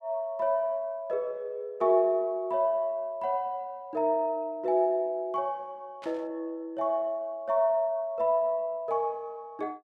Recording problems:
burst of static; at 6 s; peak -14 dB vs average level

